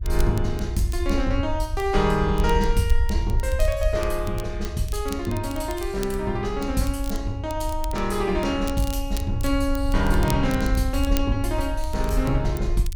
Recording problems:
low-frequency rumble; below 64 Hz, SNR 3 dB
crackling; vinyl, SNR 17 dB

